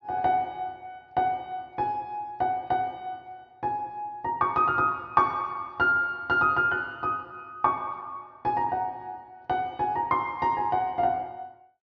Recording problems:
treble missing; nothing above 6.5 kHz

